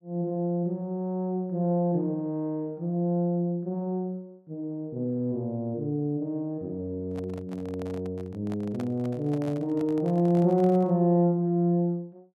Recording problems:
microphone handling noise; from 7 to 11 s; peak -9 dB vs average level

